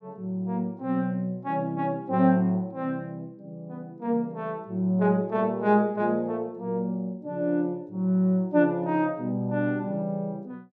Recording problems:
none

